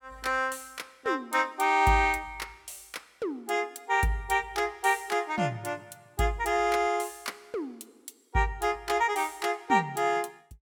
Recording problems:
none

